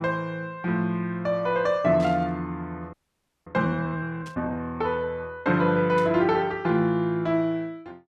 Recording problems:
burst of static; at 2 s, at 4.5 s and at 6 s; peak -13 dB vs average level
audio freezing; at 3 s for 0.5 s

